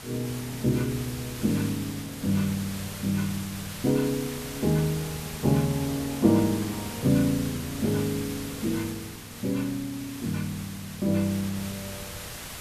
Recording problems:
background hiss; slope -1 dB per octave, SNR 10 dB

